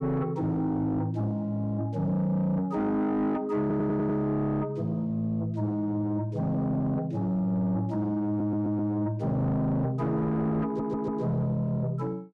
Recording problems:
distorted audio; soft clipping, signal-to-distortion ratio 11 dB
stutter; at 3.5 s, at 8.5 s and at 11 s

